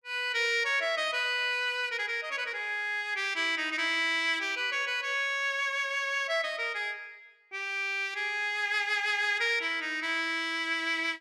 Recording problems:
none

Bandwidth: 12.5 kHz